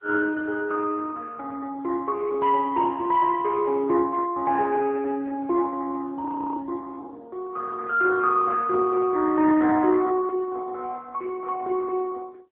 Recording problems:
telephone audio; 280 Hz to 3 kHz, AMR-NB
audio freezing; at 6.5 s

